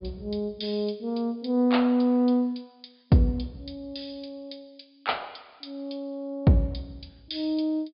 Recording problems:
treble cut off; nothing above 5 kHz

